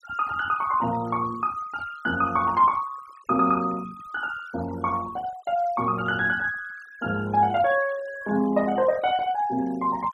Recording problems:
denoising artefacts; signal-to-artefact ratio 19 dB

